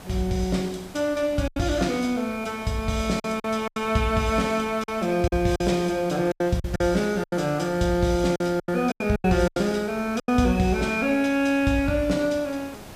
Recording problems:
background hiss; slope -5 dB per octave, SNR 18 dB
lost packets; 8% of the sound replaced, filled with silence

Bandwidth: 15 kHz